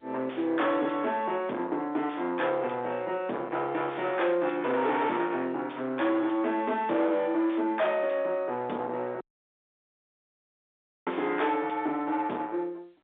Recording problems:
telephone audio; 260 Hz to 4 kHz, G.711
distorted audio; soft clipping, signal-to-distortion ratio 7 dB
dropout; at 9 s for 2 s

